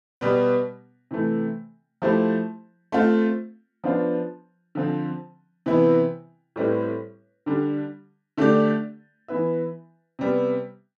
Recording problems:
none

